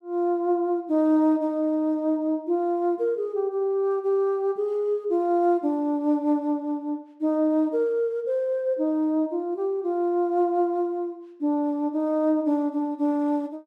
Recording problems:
none

